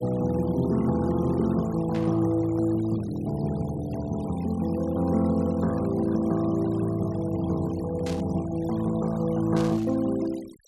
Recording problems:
noise reduction artefacts; signal-to-artefact ratio 21 dB
static burst; at 2 s, at 8 s and at 9.5 s; peak -10 dB vs average level

